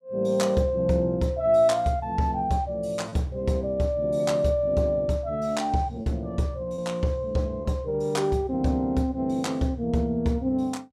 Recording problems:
lost packets; 1.2% of the sound replaced, filled with repeated pitch periods

